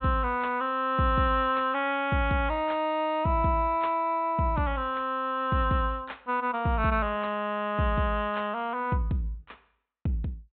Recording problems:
low-pass filter; nothing above 4 kHz

